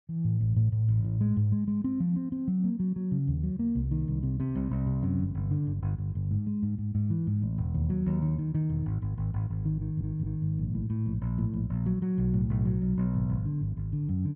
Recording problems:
stutter; at 10 s

